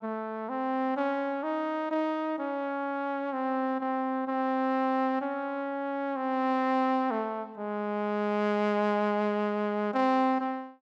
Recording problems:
none

